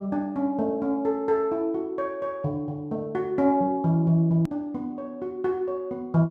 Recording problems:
edit click; at 4.5 s

